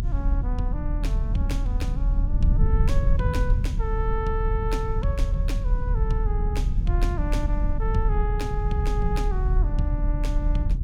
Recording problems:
low-frequency rumble; below 68 Hz, strongest tone 38 Hz, SNR -6 dB

